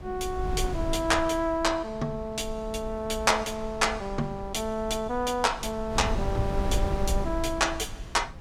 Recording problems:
wind noise; below 120 Hz, SNR 8 dB

